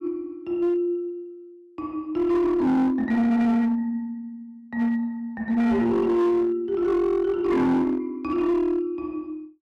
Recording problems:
distorted audio; hard clipping, uneven, signal-to-distortion ratio 11 dB

